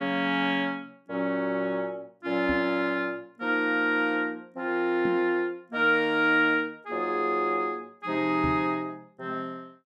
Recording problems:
microphone thump; at 2.5 s, at 5 s and at 8.5 s; peak -3 dB vs average level

